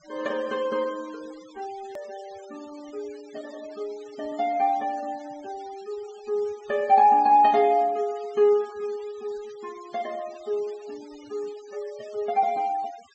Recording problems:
low-pass filter; nothing above 8 kHz
noise reduction artefacts; signal-to-artefact ratio 24 dB
edit click; at 2 s

